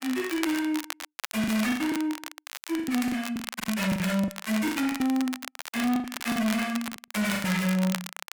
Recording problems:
distorted audio; soft clipping, signal-to-distortion ratio 7 dB
crackle; vinyl, SNR 10 dB
lost packets; 15% of the sound replaced, filled with the last packet

